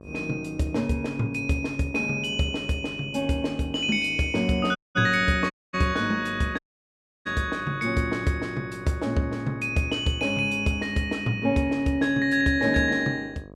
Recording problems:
mains hum; 50 Hz, harmonics up to 1.3 kHz, SNR 20 dB
dropout; at 5 s, at 5.5 s and at 6.5 s for 0.5 s

